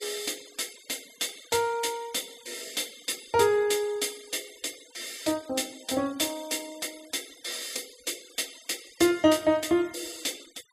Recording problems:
denoising artefacts; signal-to-artefact ratio 21 dB

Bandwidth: 15.5 kHz